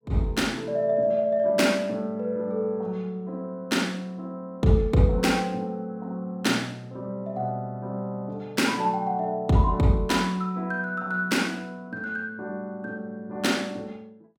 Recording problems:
none

